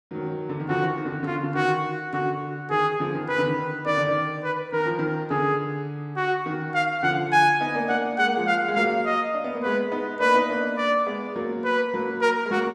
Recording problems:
none

